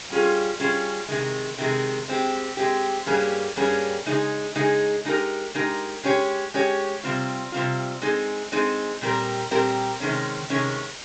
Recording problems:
treble cut off; nothing above 8 kHz
background hiss; slope 0 dB per octave, SNR 11 dB

